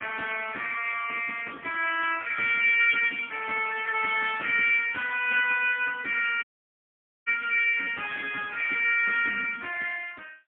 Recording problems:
telephone audio; 300 Hz to 3.3 kHz, AMR-NB, then MP3
audio cutting out; at 6.5 s for 1 s

